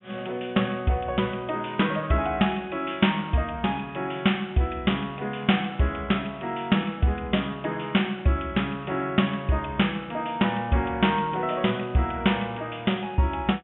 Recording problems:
low-pass filter; nothing above 3.4 kHz

